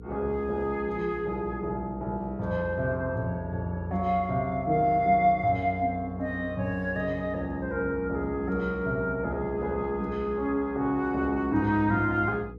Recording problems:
hum; 60 Hz, harmonics up to 480 Hz, SNR 16 dB

